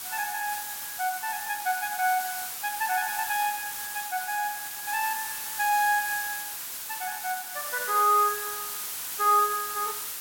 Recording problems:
hiss; slope +2 dB per octave, SNR 5 dB

